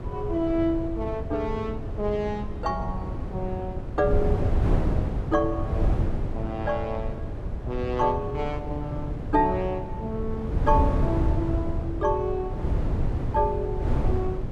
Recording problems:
wind on the microphone; below 150 Hz, SNR 1 dB

